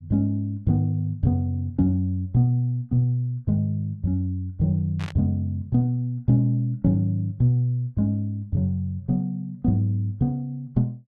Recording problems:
static burst; at 5 s; peak -10 dB vs average level

